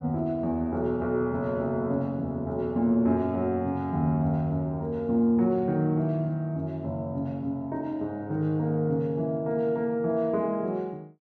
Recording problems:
none

